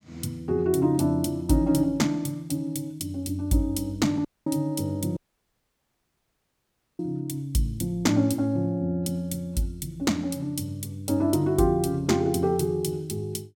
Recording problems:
audio cutting out; at 4.5 s and at 5 s for 2 s

